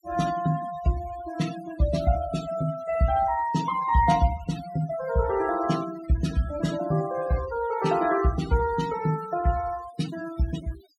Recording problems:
denoising artefacts; signal-to-artefact ratio 15 dB

